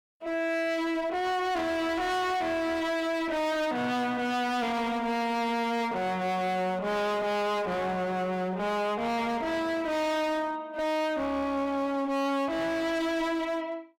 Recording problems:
distorted audio; hard clipping, uneven, signal-to-distortion ratio 5 dB

